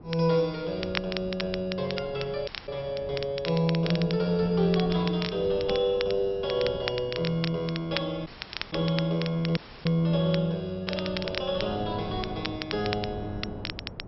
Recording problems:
treble missing; nothing above 5.6 kHz
wind noise; below 430 Hz, SNR 16 dB
crackling; vinyl, SNR 9 dB
audio cutting out; at 2.5 s, at 8.5 s and at 9.5 s

